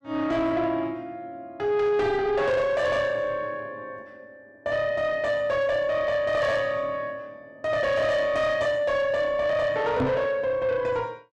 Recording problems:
distortion; soft clipping, signal-to-distortion ratio 10 dB
microphone bump; at 10 s; peak +4 dB vs average level

